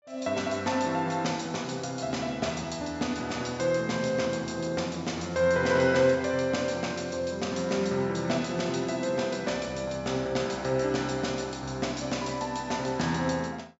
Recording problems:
treble missing; nothing above 8 kHz

